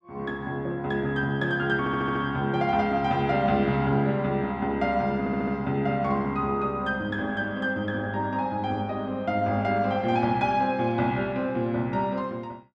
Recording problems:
audio stuttering; at 2 s and at 5 s

